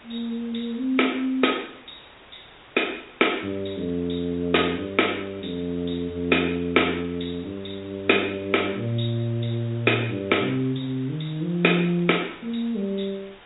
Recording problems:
treble cut off; nothing above 3.8 kHz
lossy codec; MP3, log-spectral distance 8 dB
background hiss; SNR 23 dB

